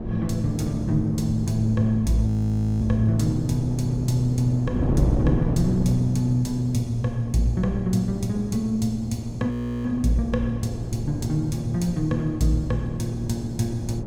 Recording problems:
wind on the microphone; below 280 Hz, SNR 8 dB
audio freezing; at 2.5 s for 0.5 s and at 9.5 s

